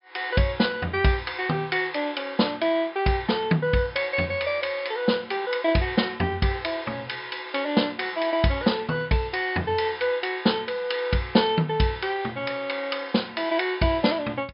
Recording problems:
low-pass filter; nothing above 5.5 kHz

